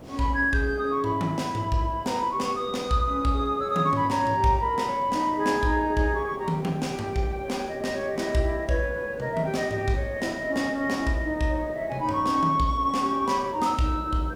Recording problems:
background hiss; SNR 16 dB

